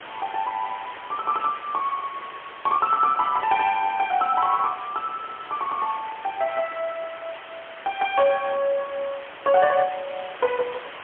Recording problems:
phone line; 300 Hz to 3.3 kHz, AMR-NB, then MP3
hiss; SNR 15 dB

